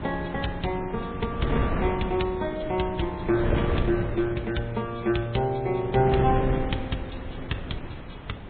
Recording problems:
treble cut off; nothing above 3.9 kHz
lossy compression; MP3, log-spectral distance 5 dB
hiss; SNR 23 dB
wind noise; below 370 Hz, SNR 4 dB

